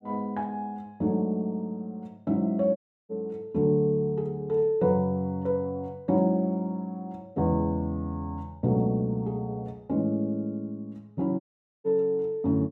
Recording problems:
audio cutting out; at 3 s and at 11 s

